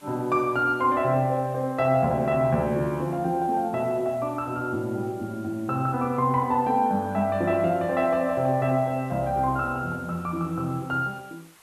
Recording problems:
hiss; SNR 28 dB

